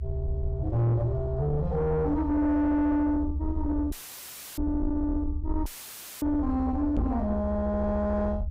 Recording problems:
distortion; soft clipping, signal-to-distortion ratio 11 dB
low-frequency rumble; below 76 Hz, SNR 6 dB
dropout; at 4 s for 0.5 s and at 5.5 s for 0.5 s; filled with static
knock on the microphone; at 7 s; peak +3 dB vs average level

